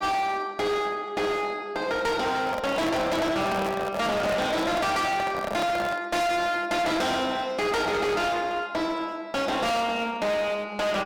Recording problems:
distorted audio; hard clipping, uneven, signal-to-distortion ratio 5 dB
handling noise; from 2.5 to 6 s; peak +1 dB vs average level

